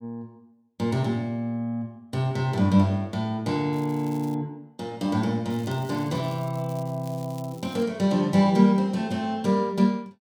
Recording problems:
crackling; at 3.5 s and from 5.5 to 8 s; loose cable, SNR 25 dB

